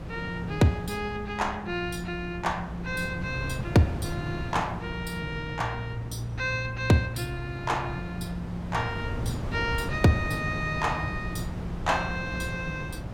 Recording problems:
hum; 60 Hz, harmonics up to 300 Hz, SNR 15 dB
wind on the microphone; below 320 Hz, SNR 8 dB

